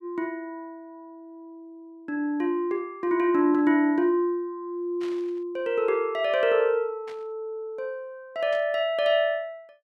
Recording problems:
burst of static; at 5 s, at 7 s and at 8.5 s; peak -14 dB vs average level

